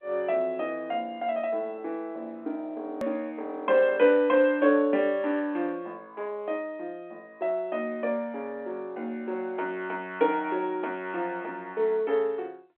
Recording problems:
phone line; 260 Hz to 3.5 kHz, G.711
click at an edit; at 3 s

